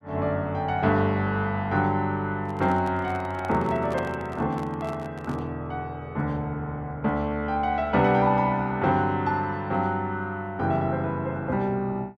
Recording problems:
handling noise; from 2.5 to 5.5 s; peak -5 dB vs average level

